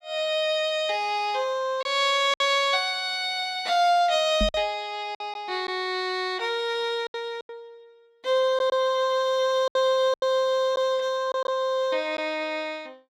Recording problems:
packet loss; 5% of the sound replaced, filled with silence
microphone thump; at 4.5 s; peak 0 dB vs average level

